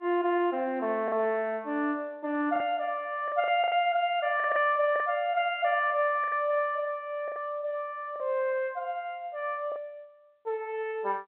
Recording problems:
telephone audio; 240 Hz to 3.5 kHz, G.711
packet loss; 6% of the sound replaced, filled with the last packet

